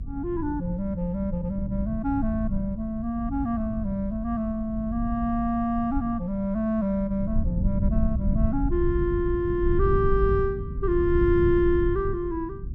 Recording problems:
rumble; below 110 Hz, SNR 5 dB

